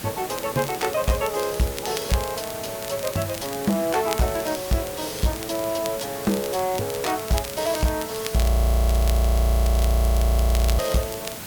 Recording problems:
distortion; soft clipping, signal-to-distortion ratio 11 dB
hiss; slope -3 dB per octave, SNR 10 dB
crackle; vinyl, SNR 14 dB
frozen audio; at 8.5 s for 2.5 s

